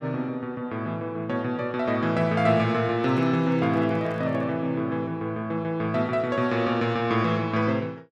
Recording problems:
microphone handling noise; from 3 to 4.5 s; peak -12 dB vs average level

